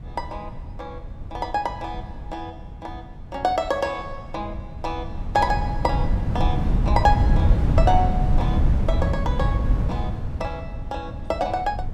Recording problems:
wind on the microphone; below 120 Hz, SNR -3 dB

